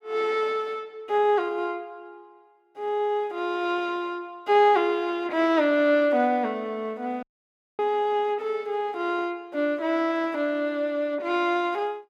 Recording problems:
audio cutting out; at 7 s for 0.5 s

